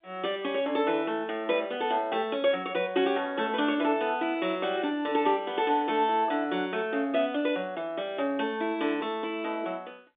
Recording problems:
phone line; 240 Hz to 3.6 kHz, G.711

